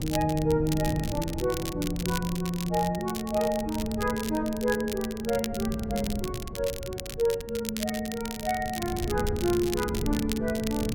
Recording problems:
wind on the microphone; below 190 Hz, SNR 9 dB
crackle; vinyl, SNR 10 dB

